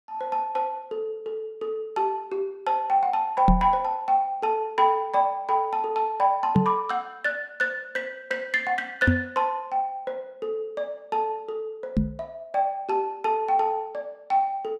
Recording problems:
microphone thump; 4 times, first at 3.5 s; peak +9 dB vs average level

